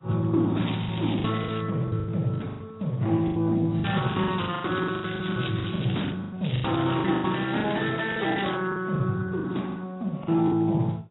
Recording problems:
codec artefacts; Speex, then AAC, log-spectral distance 11 dB, nothing above 3.8 kHz
packet loss; 15% of the sound replaced, filled with the last packet
crackle; from 0.5 to 1.5 s, from 4 to 6 s and from 6.5 to 8.5 s; loose cable, SNR 11 dB

